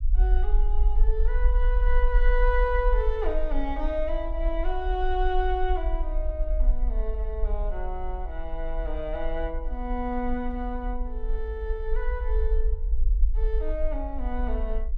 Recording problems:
low-frequency rumble; below 46 Hz, SNR -3 dB

